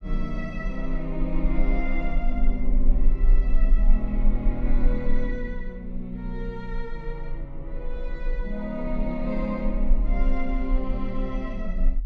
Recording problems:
rumble; below 36 Hz, strongest tone 26 Hz, SNR -3 dB

